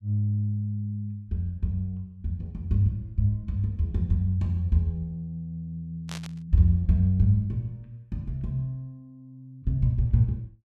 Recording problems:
static burst; at 6 s; peak -7 dB vs average level

